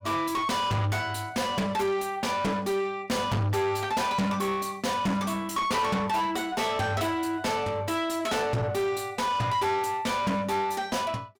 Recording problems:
distortion; soft clipping, signal-to-distortion ratio 6 dB

